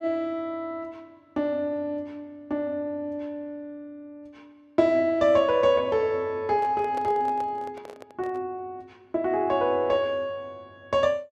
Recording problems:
microphone handling noise; from 6.5 to 8.5 s; peak -8 dB vs average level

